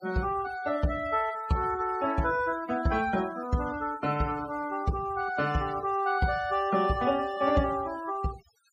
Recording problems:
denoising artefacts; signal-to-artefact ratio 19 dB

